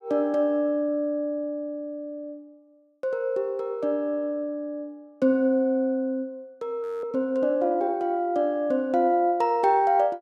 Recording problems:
frozen audio; at 7 s

